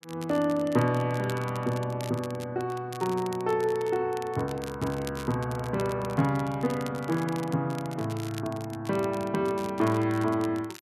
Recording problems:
crackling; vinyl, SNR 18 dB

